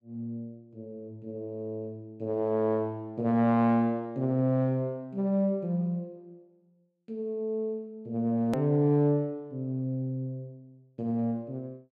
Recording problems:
edit click; at 8.5 s

